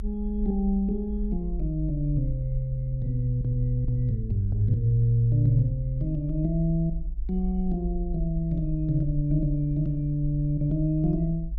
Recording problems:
low-frequency rumble; below 50 Hz, SNR 8 dB

